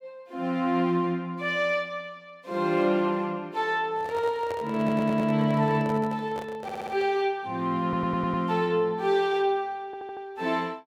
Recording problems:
handling noise; from 4 to 7 s; peak -6 dB vs average level
stutter; 4 times, first at 5 s

